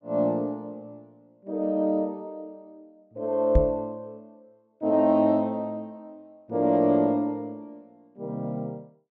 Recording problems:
treble cut off; nothing above 8 kHz
microphone bump; at 3.5 s; peak +7 dB vs average level

